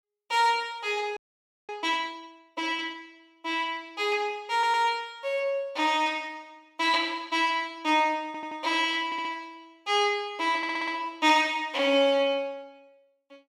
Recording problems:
audio freezing; at 1 s for 0.5 s
audio stuttering; 4 times, first at 4.5 s

